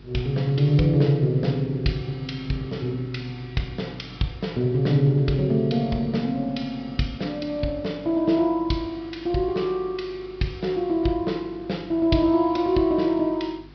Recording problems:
low-pass filter; nothing above 5.5 kHz
hum; 50 Hz, harmonics up to 400 Hz, SNR 24 dB
hiss; slope -3 dB per octave, SNR 30 dB

